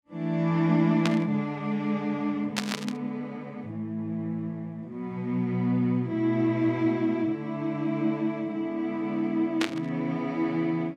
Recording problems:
static burst; at 1 s, at 2.5 s and at 9.5 s; peak +3 dB vs average level

